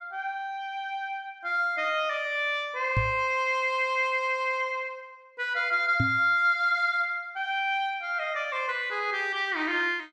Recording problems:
microphone bump; at 3 s and at 6 s; peak +3 dB vs average level

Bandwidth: 12.5 kHz